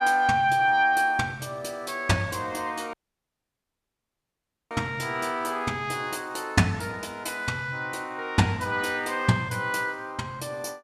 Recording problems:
audio cutting out; at 3 s for 2 s

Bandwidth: 14.5 kHz